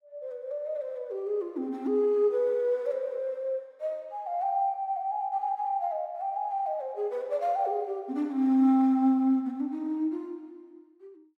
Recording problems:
none

